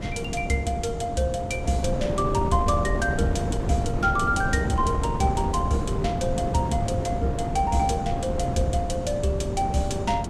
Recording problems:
wind on the microphone; below 300 Hz, SNR 3 dB

